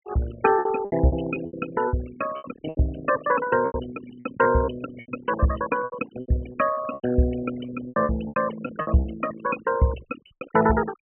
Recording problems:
treble cut off; nothing above 3.1 kHz
noise reduction artefacts; signal-to-artefact ratio 13 dB
lost packets; 13% of the sound replaced, filled with repeated pitch periods

